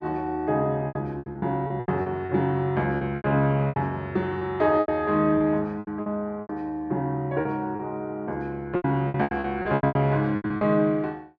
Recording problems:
lost packets; 15% of the sound replaced, filled with repeated pitch periods

